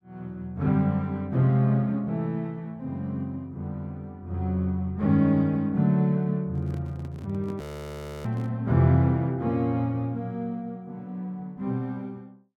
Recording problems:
microphone handling noise; from 6.5 to 8.5 s; peak -10 dB vs average level
frozen audio; at 7.5 s for 0.5 s

